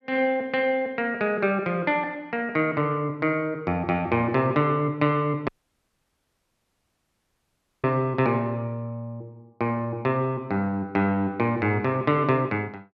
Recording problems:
audio cutting out; at 5.5 s for 2.5 s

